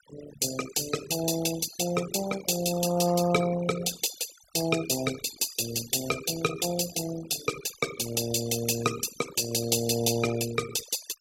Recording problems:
noise reduction artefacts; signal-to-artefact ratio 12 dB

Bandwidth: 16 kHz